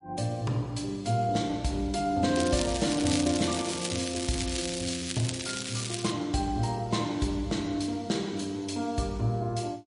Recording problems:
lossy compression; MP3, log-spectral distance 6 dB, nothing above 10.4 kHz
crackle; from 2.5 to 6 s; loose cable, SNR 4 dB

